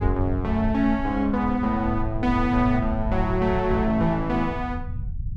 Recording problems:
rumble; below 92 Hz, SNR 9 dB

